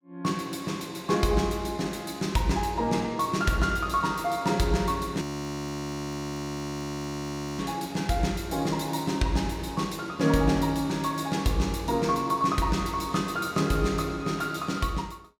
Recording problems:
frozen audio; at 5 s for 2.5 s

